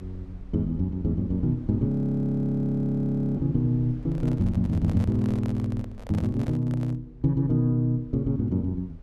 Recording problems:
low-frequency rumble; below 72 Hz, SNR 18 dB
frozen audio; at 2 s for 1.5 s
handling noise; from 4 to 7 s; peak -9 dB vs average level

